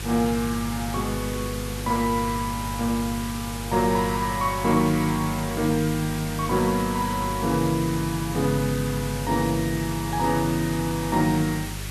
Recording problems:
hum; 50 Hz, harmonics up to 400 Hz, SNR 10 dB
background hiss; SNR 10 dB

